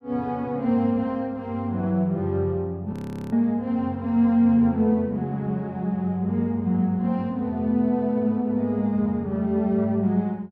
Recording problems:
frozen audio; at 3 s

